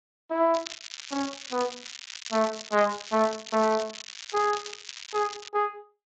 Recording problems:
lossy compression; Speex, log-spectral distance 17 dB
crackle; from 0.5 to 5.5 s; loose cable, SNR 11 dB

